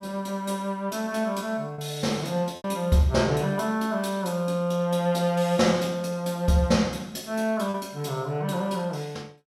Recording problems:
lost packets; 1.7% of the sound replaced, filled with repeated pitch periods

